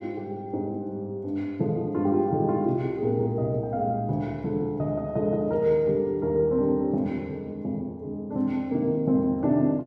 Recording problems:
none

